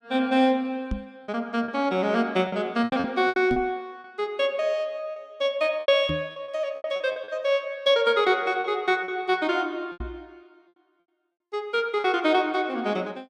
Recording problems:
lost packets; 8% of the sound replaced, filled with repeated pitch periods
microphone bump; 4 times, first at 1 s; peak -1 dB vs average level

